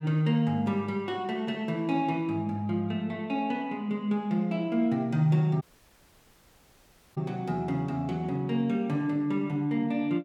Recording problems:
dropout; at 5.5 s for 1.5 s

